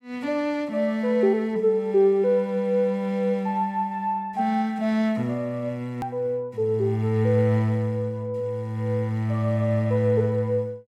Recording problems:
click at an edit; at 6 s

